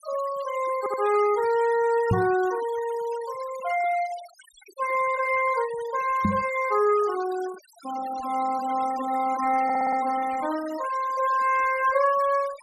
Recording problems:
denoising artefacts; signal-to-artefact ratio 18 dB
stutter; at 1 s and at 9.5 s
microphone bump; at 2 s and at 6.5 s; peak +5 dB vs average level

